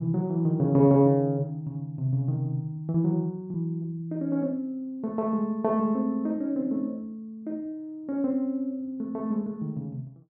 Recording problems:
lost packets; 0.8% of the sound replaced, filled with repeated pitch periods

